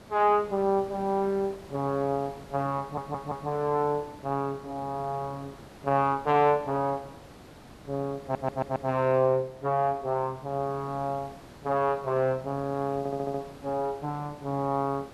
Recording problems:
hiss; slope -6 dB per octave, SNR 20 dB
audio stuttering; at 3 s, at 8 s and at 13 s

